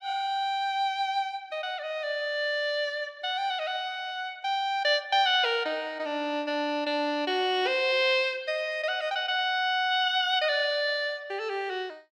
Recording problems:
none

